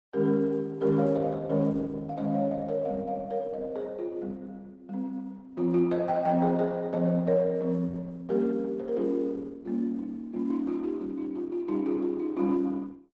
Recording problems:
lossy compression; Opus, log-spectral distance 2 dB, nothing above 7.6 kHz

